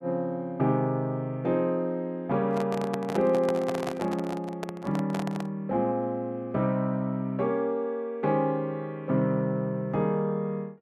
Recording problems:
handling noise; from 2.5 to 5.5 s; peak -1 dB vs average level

